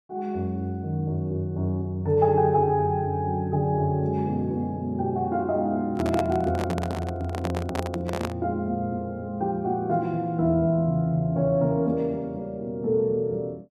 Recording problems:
microphone handling noise; from 6 to 8.5 s; peak -1 dB vs average level

